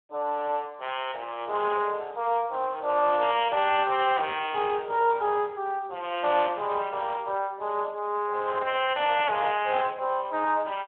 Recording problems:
telephone audio; 320 Hz to 3.3 kHz, Speex

